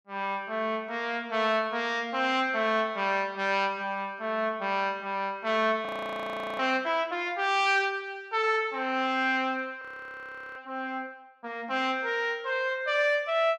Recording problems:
frozen audio; at 6 s for 0.5 s and at 10 s for 0.5 s

